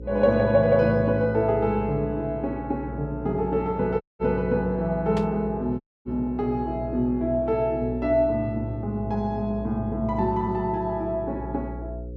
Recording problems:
hum; 60 Hz, harmonics up to 540 Hz, SNR 13 dB
audio cutting out; at 4 s and at 6 s
burst of static; at 5 s; peak -9 dB vs average level

